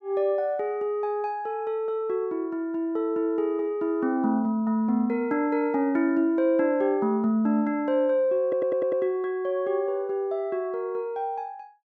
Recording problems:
stutter; at 8.5 s

